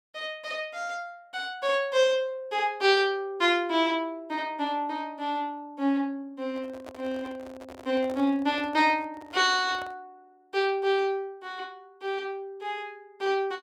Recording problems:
handling noise; from 6.5 to 10 s; peak -10 dB vs average level

